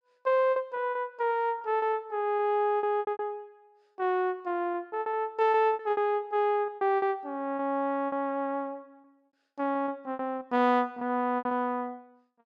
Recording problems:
lost packets; 12% of the sound replaced, filled with repeated pitch periods

